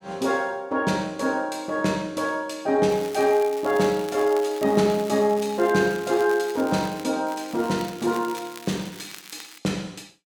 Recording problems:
crackle; from 3 to 7 s and from 7.5 to 9.5 s; loose cable, SNR 18 dB

